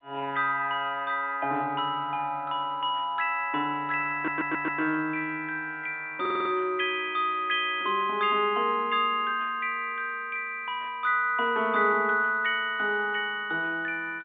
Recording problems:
phone line; 240 Hz to 3.5 kHz, G.711
audio stuttering; at 4 s and at 6 s

